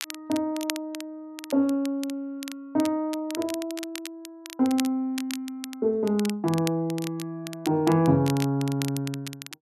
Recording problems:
crackle; vinyl, SNR 12 dB

